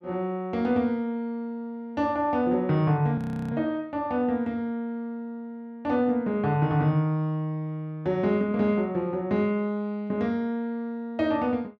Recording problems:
frozen audio; at 3 s

